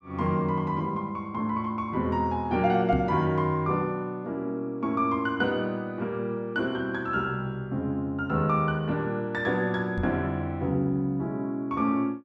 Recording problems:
microphone bump; at 3 s and at 10 s; peak +3 dB vs average level

